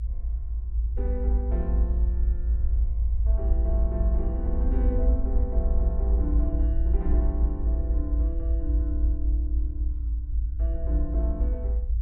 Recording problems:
low-frequency rumble; below 58 Hz, strongest tone 56 Hz, SNR -10 dB

